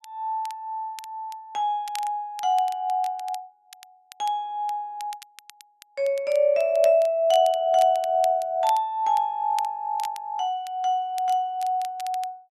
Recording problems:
crackling; vinyl, SNR 21 dB

